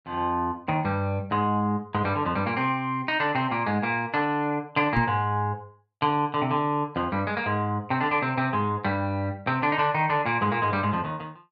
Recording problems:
knock on the microphone; at 5 s; peak +2 dB vs average level

